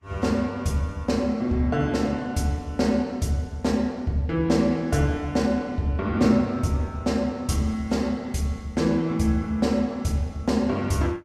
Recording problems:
lossy codec; Vorbis, log-spectral distance 2 dB, nothing above 12.7 kHz

